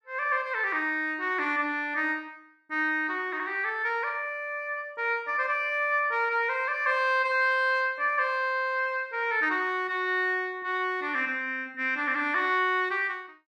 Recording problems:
none

